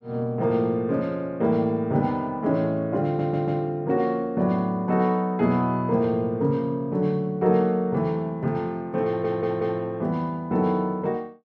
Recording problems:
stutter; at 3 s and at 9 s

